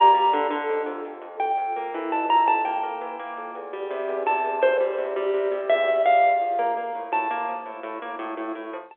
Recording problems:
telephone audio; 320 Hz to 3.5 kHz, G.711

